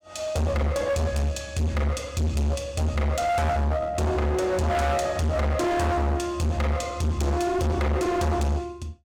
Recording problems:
distortion; hard clipping, uneven, signal-to-distortion ratio 5 dB

